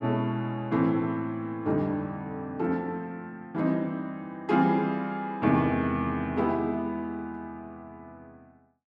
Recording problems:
none

